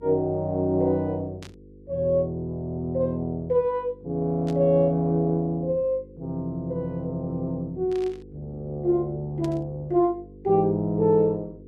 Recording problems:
hum; 50 Hz, harmonics up to 500 Hz, SNR 22 dB
burst of static; 4 times, first at 1.5 s; peak -13 dB vs average level

